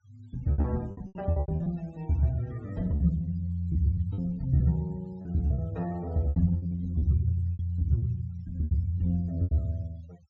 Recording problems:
treble missing; nothing above 7.9 kHz
noise reduction artefacts; signal-to-artefact ratio 27 dB
lost packets; 12% of the sound replaced, filled with repeated pitch periods

